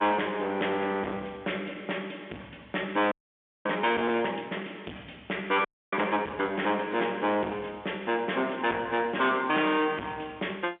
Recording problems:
phone line; 240 Hz to 3.6 kHz, G.711
distortion; soft clipping, signal-to-distortion ratio 8 dB
frozen audio; at 3 s for 0.5 s and at 5.5 s

